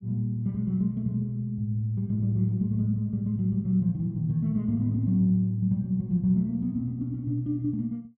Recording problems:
none

